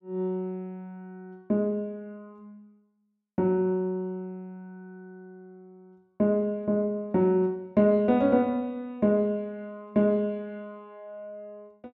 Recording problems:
none

